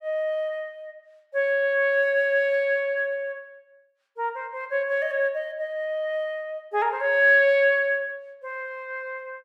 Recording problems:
none

